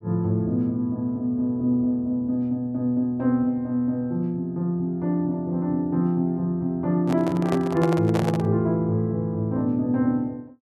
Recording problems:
microphone handling noise; from 7 to 8.5 s; peak -1 dB vs average level

